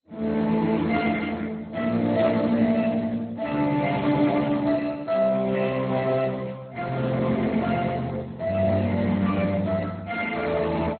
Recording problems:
codec artefacts; Speex, then MP2, log-spectral distance 4 dB, nothing above 4.2 kHz

